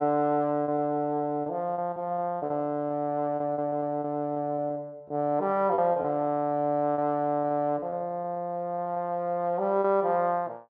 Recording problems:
packet loss; 9% of the sound replaced, filled with repeated pitch periods

